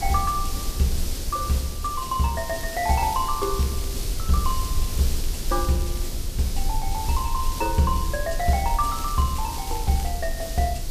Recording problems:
background hiss; SNR 8 dB
low-frequency rumble; below 52 Hz, strongest tone 20 Hz, SNR 6 dB
crackling; from 2.5 to 5.5 s, at 5.5 s and from 7 to 10 s; loose cable, SNR 19 dB

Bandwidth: 14.5 kHz